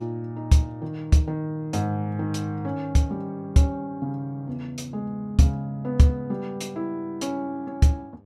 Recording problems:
mains hum; 50 Hz, harmonics up to 1.1 kHz, SNR 29 dB

